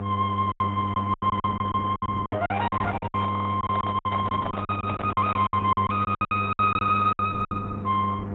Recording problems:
codec artefacts; AAC, then Opus, log-spectral distance 4 dB, nothing above 3.8 kHz
hum; 50 Hz, harmonics up to 1.2 kHz, SNR 6 dB
packet loss; 17% of the sound replaced, filled with silence
handling noise; from 2.5 to 5.5 s; peak -3 dB vs average level
stutter; at 3.5 s

